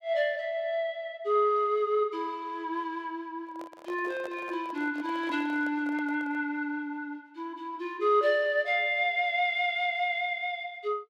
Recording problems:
handling noise; from 3.5 to 6.5 s; peak -11 dB vs average level

